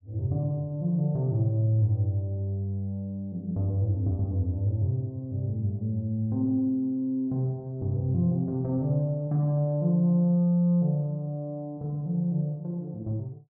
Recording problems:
none

